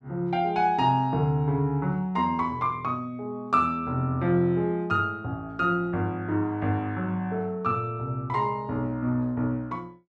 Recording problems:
none

